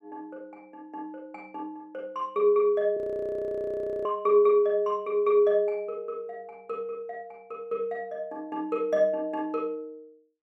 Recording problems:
audio freezing; at 3 s for 1 s

